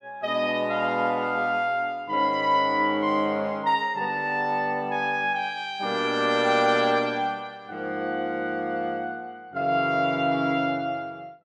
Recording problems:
none

